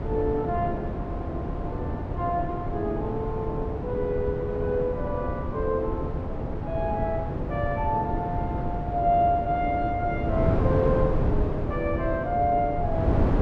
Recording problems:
wind on the microphone; below 340 Hz, SNR 2 dB

